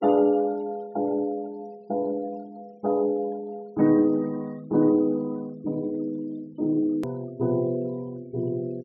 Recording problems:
treble cut off; nothing above 5.8 kHz
noise reduction artefacts; signal-to-artefact ratio 27 dB
click at an edit; at 7 s

